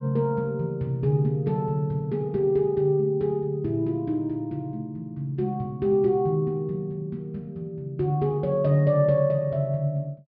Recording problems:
treble cut off; nothing above 5.5 kHz

